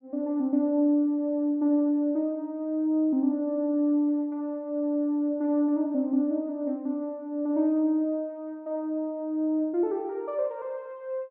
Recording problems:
none

